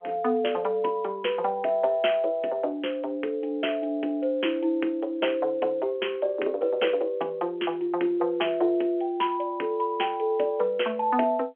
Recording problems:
phone line; 260 Hz to 3.3 kHz, G.711

